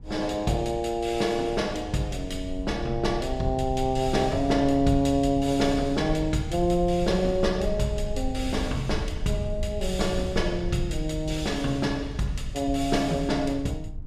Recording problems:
rumble; below 78 Hz, SNR 10 dB

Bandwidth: 14.5 kHz